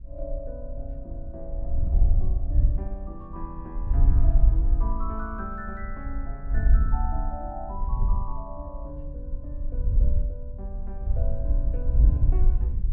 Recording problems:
wind on the microphone; below 60 Hz, SNR -13 dB

